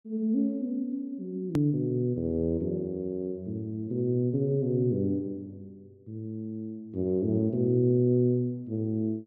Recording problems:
click at an edit; at 1.5 s

